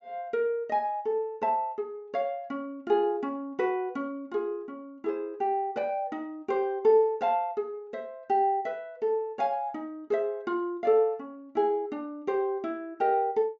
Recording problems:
treble cut off; nothing above 8 kHz

